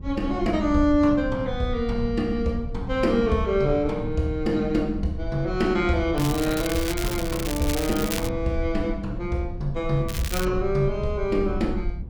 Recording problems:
rumble; below 74 Hz, SNR 10 dB
crackle; from 6 to 8.5 s and at 10 s; loose cable, SNR 8 dB

